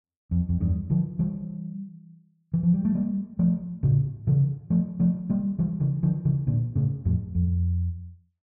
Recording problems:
none

